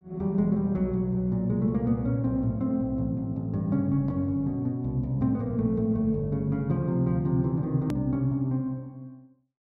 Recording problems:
hard cut with a click; at 8 s

